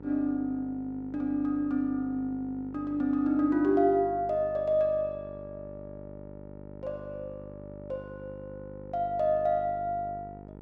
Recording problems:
hum; 50 Hz, harmonics up to 1.4 kHz, SNR 16 dB

